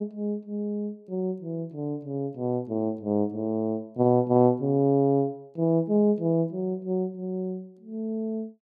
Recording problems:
none

